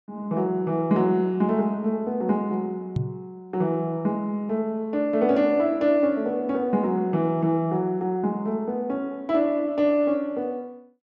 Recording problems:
microphone thump; at 3 s; peak +2 dB vs average level

